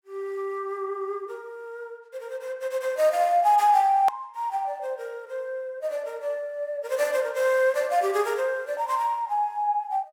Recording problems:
click at an edit; at 4 s

